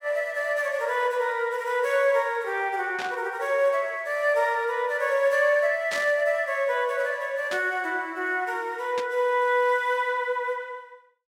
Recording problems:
burst of static; 4 times, first at 3 s; peak -5 dB vs average level

